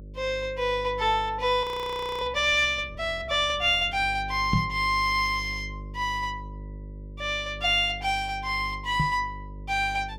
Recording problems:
hum; 50 Hz, harmonics up to 550 Hz, SNR 16 dB
audio freezing; at 1.5 s for 0.5 s
knock on the microphone; at 4.5 s and at 9 s; peak +4 dB vs average level

